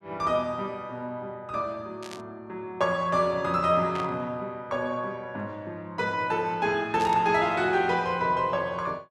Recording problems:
static burst; at 2 s, at 4 s and at 7 s; peak -8 dB vs average level

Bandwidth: 12.5 kHz